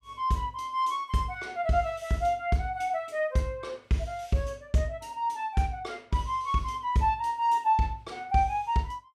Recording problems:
none

